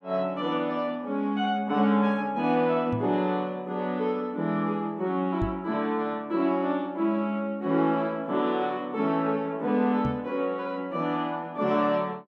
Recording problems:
knock on the microphone; at 3 s, at 5.5 s and at 10 s; peak -1 dB vs average level

